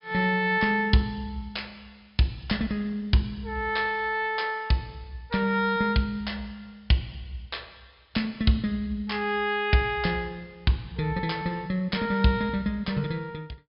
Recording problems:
treble missing; nothing above 5.5 kHz

